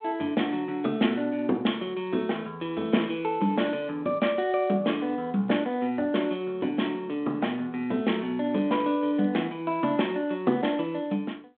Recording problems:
telephone audio; 170 Hz to 3.6 kHz, G.726

